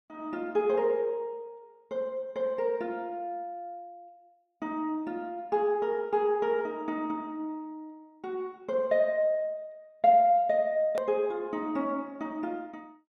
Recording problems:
click at an edit; at 11 s

